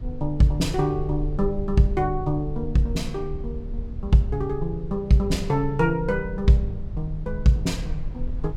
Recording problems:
rumble; below 60 Hz, SNR 10 dB

